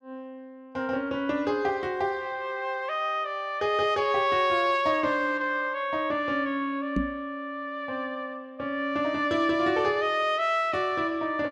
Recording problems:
microphone bump; at 7 s; peak +2 dB vs average level

